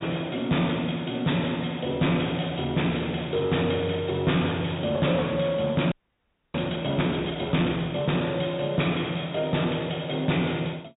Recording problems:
low-pass filter; nothing above 4 kHz
distortion; soft clipping, signal-to-distortion ratio 11 dB
audio freezing; at 6 s for 0.5 s

